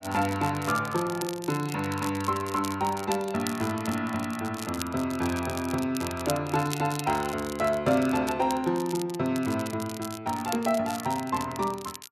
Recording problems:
crackling; vinyl, SNR 12 dB

